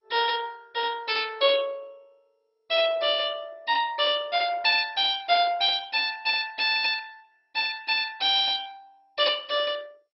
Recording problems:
lossy codec; MP2, log-spectral distance 5 dB

